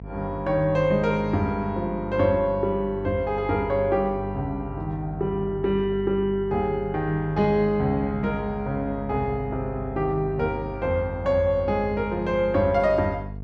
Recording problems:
electrical hum; 50 Hz, harmonics up to 500 Hz, SNR 12 dB

